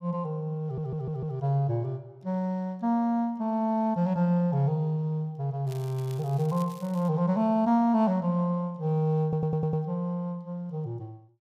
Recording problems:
audio stuttering; at 0.5 s and at 9 s
crackle; from 5.5 to 7 s; loose cable, SNR 24 dB

